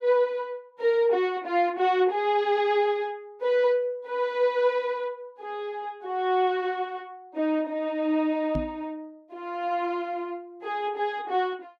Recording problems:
microphone thump; at 8.5 s; peak -1 dB vs average level

